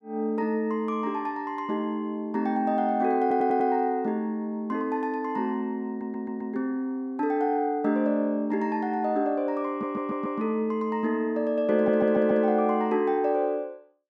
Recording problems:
audio stuttering; 4 times, first at 3 s

